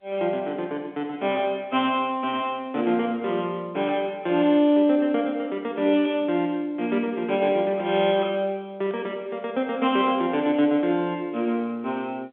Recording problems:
phone line; 240 Hz to 3.6 kHz, G.711

